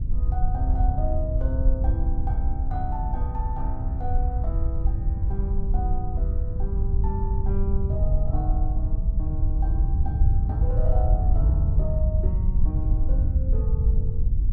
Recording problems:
wind on the microphone; below 76 Hz, SNR -10 dB

